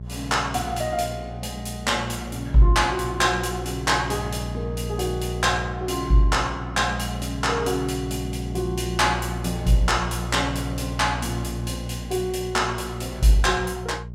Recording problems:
mains hum; 60 Hz, harmonics up to 420 Hz, SNR 8 dB

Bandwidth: 16 kHz